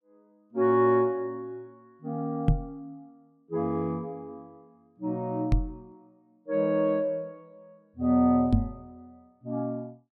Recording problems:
microphone bump; at 2.5 s, at 5.5 s and at 8.5 s; peak +8 dB vs average level

